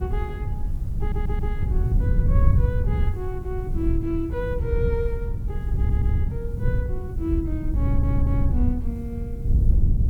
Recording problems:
background hiss; slope 0 dB per octave, SNR 28 dB
rumble; below 48 Hz, SNR 6 dB
wind on the microphone; below 98 Hz, SNR -7 dB
audio stuttering; at 1 s, at 6 s and at 8 s

